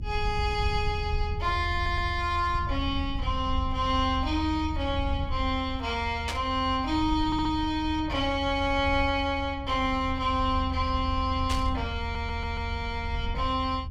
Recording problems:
rumble; below 82 Hz, SNR 6 dB
stutter; at 2 s, at 7.5 s and at 12 s
static burst; at 6.5 s and at 11 s; peak 0 dB vs average level

